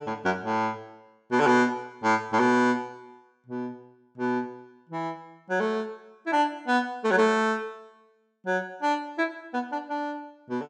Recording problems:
none

